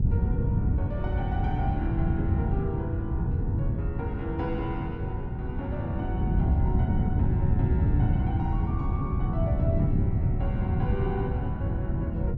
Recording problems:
treble cut off; nothing above 8 kHz
hum; 60 Hz, harmonics up to 480 Hz, SNR 13 dB
wind on the microphone; below 150 Hz, SNR -8 dB

